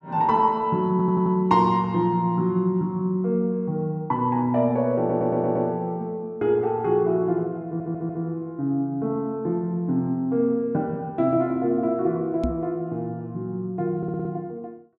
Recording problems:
audio stuttering; 4 times, first at 1 s
microphone bump; at 12 s; peak +2 dB vs average level

